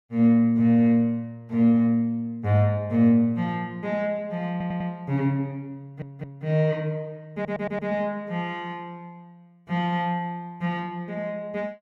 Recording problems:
stutter; at 4.5 s, at 6 s and at 7.5 s

